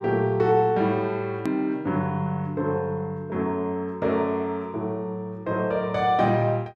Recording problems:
edit click; at 1.5 s

